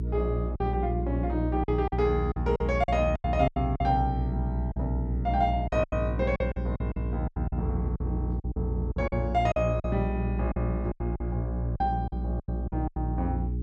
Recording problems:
electrical hum; 60 Hz, harmonics up to 420 Hz, SNR 1 dB
lost packets; 12% of the sound replaced, filled with silence

